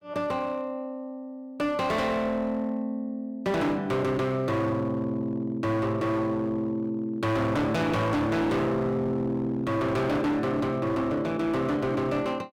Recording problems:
distorted audio; hard clipping, uneven, signal-to-distortion ratio 7 dB

